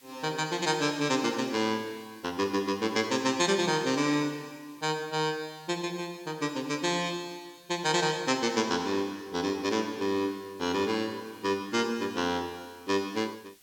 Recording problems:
background hiss; SNR 27 dB

